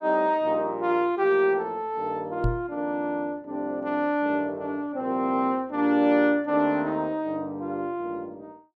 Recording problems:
microphone bump; at 2.5 s; peak +3 dB vs average level

